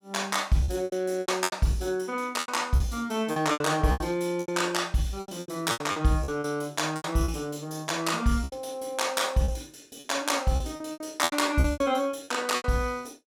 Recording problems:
lost packets; 14% of the sound replaced, filled with repeated pitch periods

